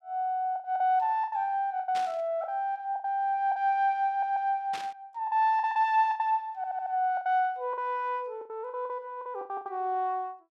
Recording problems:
lost packets; 12% of the sound replaced, filled with the last packet
burst of static; at 2 s and at 4.5 s; peak -6 dB vs average level
stutter; at 4 s and at 6.5 s

